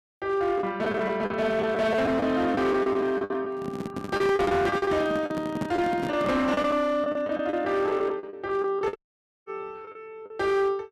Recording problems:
distortion; hard clipping, uneven, signal-to-distortion ratio 11 dB
packet loss; 12% of the sound replaced, filled with the last packet
microphone handling noise; from 3.5 to 6.5 s; peak 0 dB vs average level
dropout; at 9 s for 0.5 s

